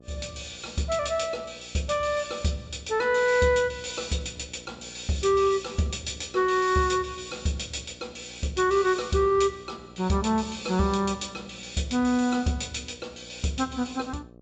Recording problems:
treble missing; nothing above 8 kHz
hum; 60 Hz, harmonics up to 780 Hz, SNR 24 dB

